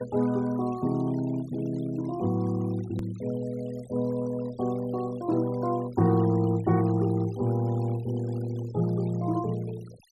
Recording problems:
noise reduction artefacts; signal-to-artefact ratio 22 dB
hard cut with a click; at 3 s

